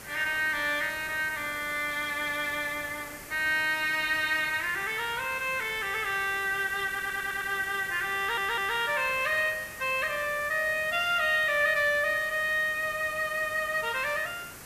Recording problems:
background hiss; SNR 15 dB
audio stuttering; at 7 s and at 8 s

